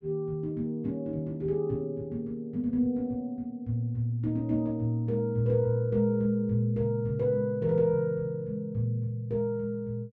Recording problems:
none

